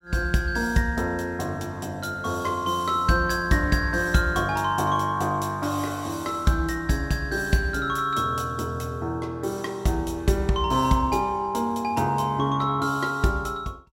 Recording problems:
none

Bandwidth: 16 kHz